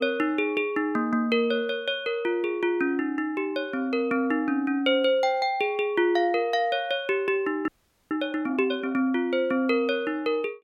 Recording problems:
audio freezing; at 7.5 s

